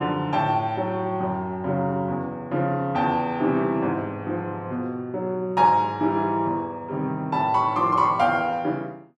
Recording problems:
none

